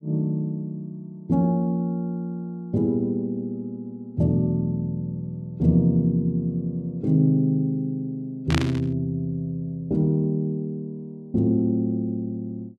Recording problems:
burst of static; at 8.5 s; peak +1 dB vs average level

